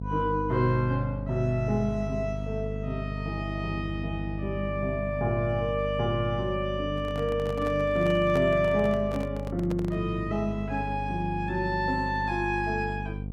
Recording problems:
hum; 50 Hz, harmonics up to 500 Hz, SNR 6 dB
microphone handling noise; from 7 to 10 s; peak -3 dB vs average level

